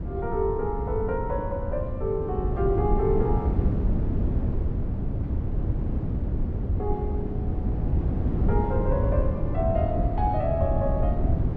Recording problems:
wind noise; below 160 Hz, SNR -2 dB

